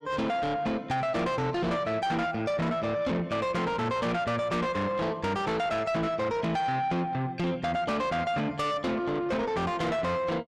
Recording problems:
distortion; soft clipping, signal-to-distortion ratio 7 dB

